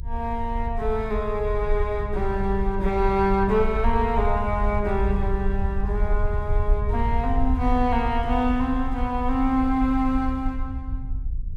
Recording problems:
low-frequency rumble; below 64 Hz, SNR 4 dB

